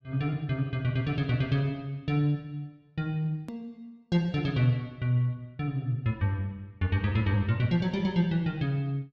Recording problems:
click at an edit; at 3.5 s

